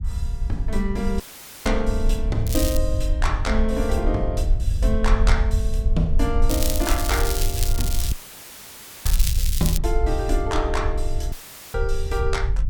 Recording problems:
rumble; below 62 Hz, SNR -1 dB
audio cutting out; at 1 s, at 8 s for 1 s and at 11 s; filled with static
crackle; at 2.5 s and from 6.5 to 10 s; loose cable, SNR 2 dB

